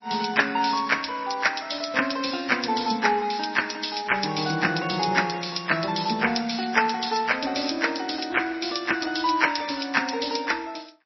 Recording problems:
lossy codec; MP3, log-spectral distance 12 dB, nothing above 5.7 kHz

